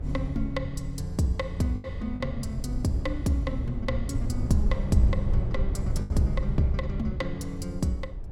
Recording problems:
wind on the microphone; below 86 Hz, SNR 3 dB
lost packets; 2% of the sound replaced, filled with the last packet

